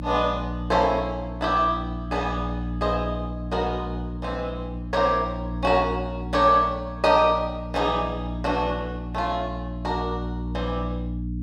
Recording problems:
electrical hum; 60 Hz, harmonics up to 300 Hz, SNR 7 dB

